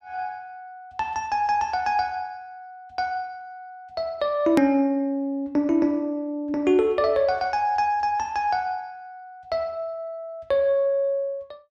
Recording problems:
click at an edit; at 4.5 s

